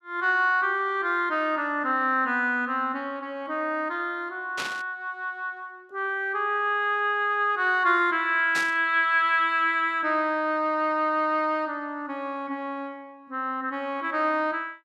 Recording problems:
burst of static; at 4.5 s and at 8.5 s; peak -3 dB vs average level

